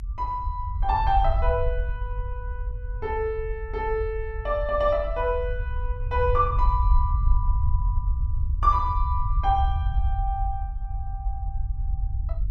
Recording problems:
low-frequency rumble; below 70 Hz, SNR 1 dB

